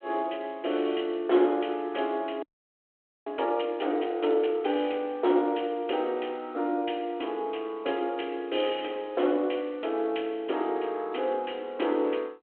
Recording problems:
phone line; 260 Hz to 3.4 kHz, G.726
frozen audio; at 2.5 s for 1 s

